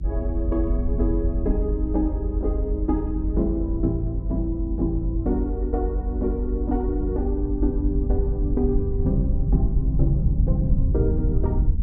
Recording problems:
rumble; below 76 Hz, SNR -1 dB

